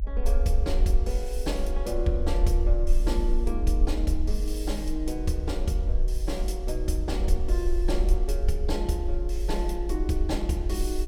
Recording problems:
low-frequency rumble; below 46 Hz, SNR -1 dB

